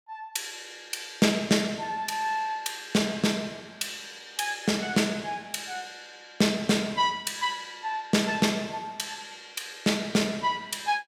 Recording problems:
none

